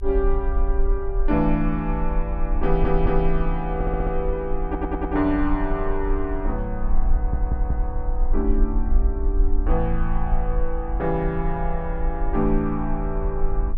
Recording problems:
low-frequency rumble; below 46 Hz, strongest tone 22 Hz, SNR 1 dB
stutter; 4 times, first at 2.5 s

